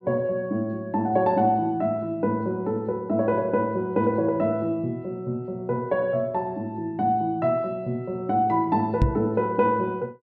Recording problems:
knock on the microphone; at 9 s; peak +8 dB vs average level

